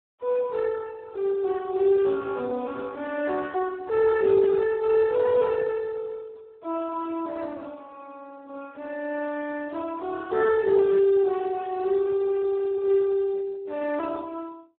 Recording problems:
telephone audio; 300 Hz to 2.5 kHz, Speex

